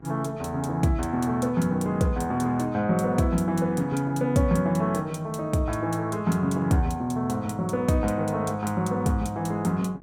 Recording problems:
hum; 50 Hz, harmonics up to 1.6 kHz, SNR 25 dB

